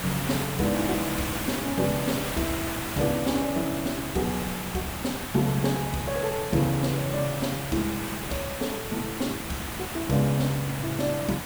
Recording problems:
background hiss; SNR 4 dB

